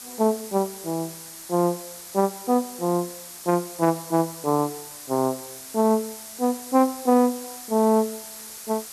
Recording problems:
background hiss; SNR 13 dB

